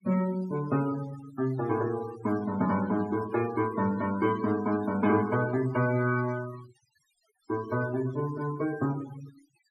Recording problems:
denoising artefacts; signal-to-artefact ratio 17 dB

